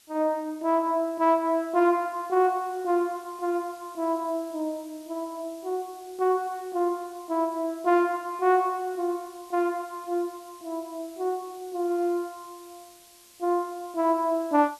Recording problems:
hiss; slope +1 dB per octave, SNR 24 dB

